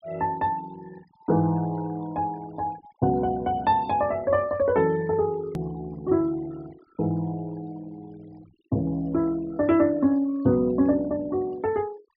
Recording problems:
low-pass filter; nothing above 5.5 kHz
denoising artefacts; signal-to-artefact ratio 25 dB
hard cut with a click; at 5.5 s

